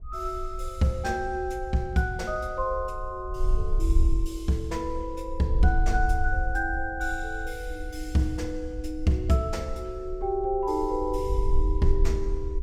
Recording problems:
wind noise; below 52 Hz, SNR 4 dB

